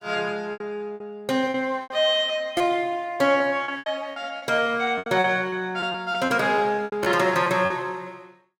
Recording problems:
lost packets; 12% of the sound replaced, filled with repeated pitch periods

